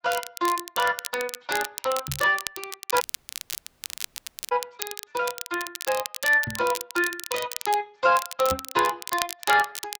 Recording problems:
lossy codec; Speex, log-spectral distance 4 dB
crackling; vinyl, SNR 8 dB
microphone bump; at 2 s, at 6.5 s and at 8.5 s; peak -4 dB vs average level
dropout; at 3 s for 1.5 s

